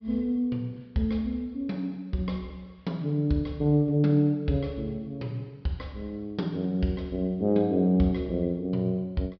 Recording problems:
treble cut off; nothing above 5.5 kHz

